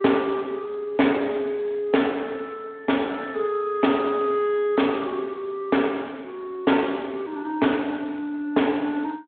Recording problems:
phone line; 240 Hz to 3.5 kHz, Speex

